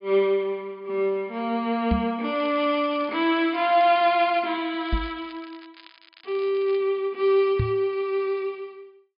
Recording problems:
treble cut off; nothing above 5 kHz
microphone thump; at 2 s, at 5 s and at 7.5 s; peak +3 dB vs average level
crackle; from 2.5 to 4.5 s and from 5 to 7 s; loose cable, SNR 25 dB

